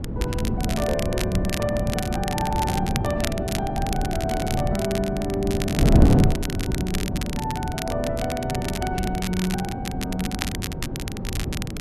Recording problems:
wind noise; below 240 Hz, SNR -1 dB
crackling; vinyl, SNR 6 dB

